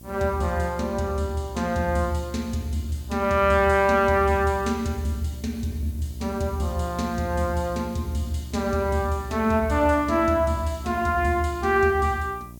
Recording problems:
electrical hum; 60 Hz, harmonics up to 720 Hz, SNR 19 dB
background hiss; SNR 26 dB

